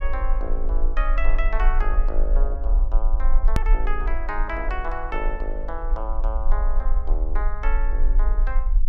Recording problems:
rumble; below 36 Hz, strongest tone 20 Hz, SNR -7 dB
edit click; at 3.5 s

